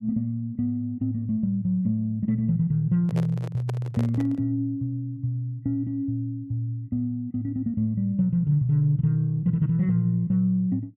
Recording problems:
handling noise; from 3 to 4.5 s; peak -6 dB vs average level

